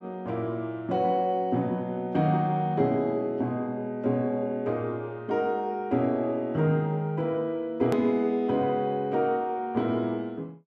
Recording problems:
click at an edit; at 8 s

